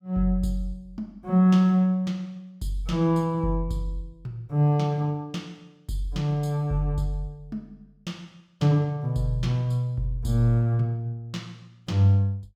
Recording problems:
none

